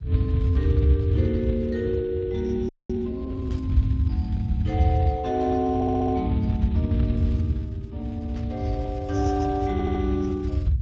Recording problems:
lossy codec; Speex, log-spectral distance 2 dB
rumble; below 110 Hz, SNR -1 dB
frozen audio; at 2.5 s
static burst; at 3.5 s, at 5.5 s and at 8.5 s; peak -16 dB vs average level
audio stuttering; at 6 s and at 9.5 s

